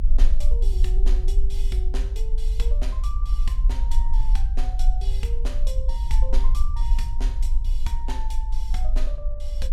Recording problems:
electrical hum; 60 Hz, harmonics up to 1.6 kHz, SNR 24 dB
rumble; below 46 Hz, strongest tone 22 Hz, SNR -12 dB

